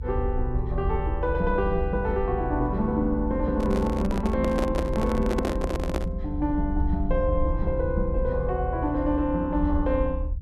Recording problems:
rumble; below 72 Hz, SNR 4 dB
handling noise; from 3.5 to 6 s; peak +2 dB vs average level

